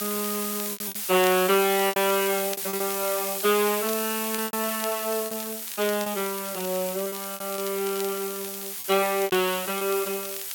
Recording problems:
hiss; slope +3 dB per octave, SNR 4 dB
crackle; vinyl, SNR 15 dB
lost packets; 9% of the sound replaced, filled with repeated pitch periods

